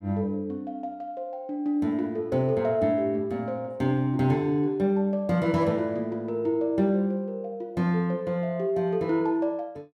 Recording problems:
none

